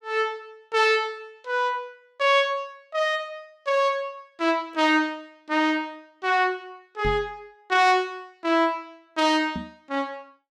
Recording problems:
microphone thump; at 7 s and at 9.5 s; peak -3 dB vs average level

